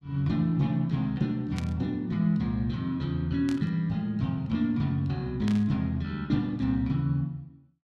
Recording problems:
burst of static; at 1.5 s, at 3.5 s and at 5.5 s; peak -7 dB vs average level

